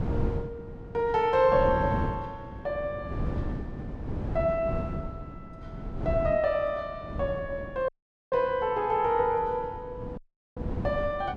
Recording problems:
wind on the microphone; below 260 Hz, SNR 8 dB
audio cutting out; at 8 s and at 10 s

